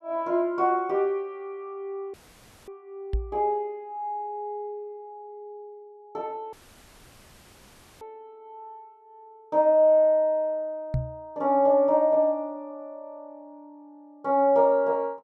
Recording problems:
dropout; at 2 s for 0.5 s and at 6.5 s for 1.5 s
knock on the microphone; at 3 s and at 11 s; peak +1 dB vs average level

